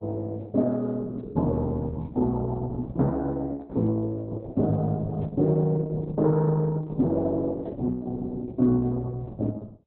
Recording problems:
lossy codec; Opus, log-spectral distance 2 dB

